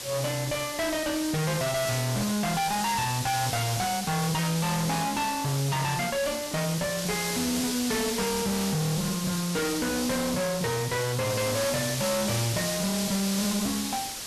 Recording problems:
distortion; hard clipping, uneven, signal-to-distortion ratio 5 dB
background hiss; slope 0 dB per octave, SNR 4 dB

